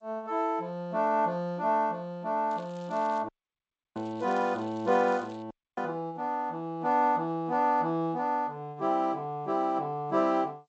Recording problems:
lossy compression; G.722, then MP3, log-spectral distance 2 dB, nothing above 7.6 kHz
crackle; at 2.5 s and from 4 to 5.5 s; loose cable, SNR 28 dB
audio cutting out; at 3.5 s for 0.5 s and at 5.5 s

